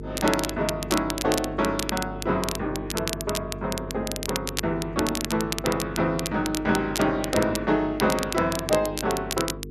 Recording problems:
electrical hum; 50 Hz, harmonics up to 450 Hz, SNR 11 dB
crackling; vinyl, SNR 6 dB

